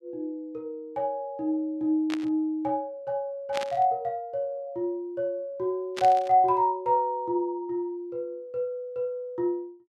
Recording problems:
static burst; at 2 s, at 3.5 s and at 6 s; peak -1 dB vs average level

